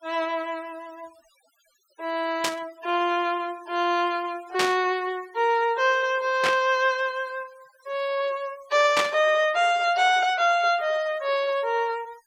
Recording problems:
denoising artefacts; signal-to-artefact ratio 22 dB
burst of static; 4 times, first at 2.5 s; peak +3 dB vs average level

